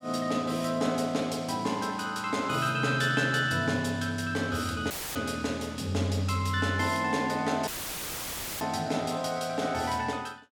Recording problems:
audio cutting out; at 5 s and at 7.5 s for 1 s; filled with static

